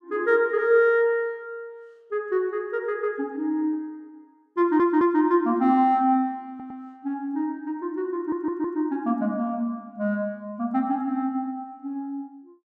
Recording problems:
stutter; at 4.5 s, at 6.5 s and at 8 s

